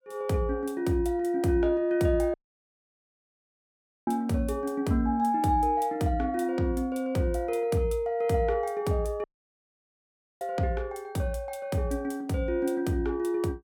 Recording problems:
audio cutting out; at 2.5 s for 1.5 s and at 9 s for 1 s

